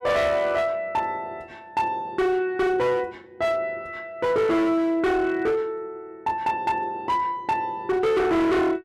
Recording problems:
distorted audio; hard clipping, signal-to-distortion ratio 7 dB

